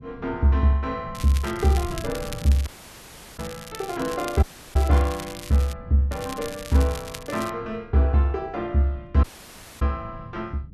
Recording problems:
rumble; below 170 Hz, SNR 18 dB
crackling; from 1 to 5.5 s and from 6 to 7.5 s; loose cable, SNR 15 dB
audio cutting out; at 2.5 s for 0.5 s, at 4.5 s and at 9 s for 0.5 s

